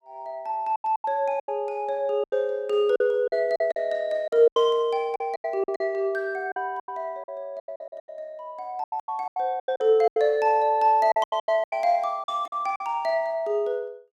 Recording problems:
packet loss; 15% of the sound replaced, filled with silence

